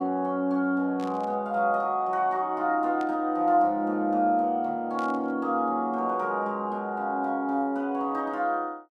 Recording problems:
burst of static; at 1 s, at 3 s and at 5 s; peak -14 dB vs average level

